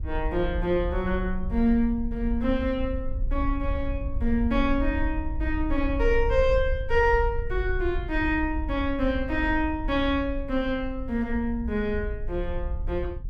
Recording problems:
wind on the microphone; below 60 Hz, SNR 6 dB

